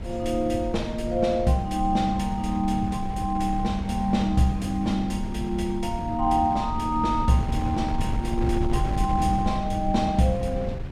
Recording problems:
wind on the microphone; below 140 Hz, SNR 6 dB

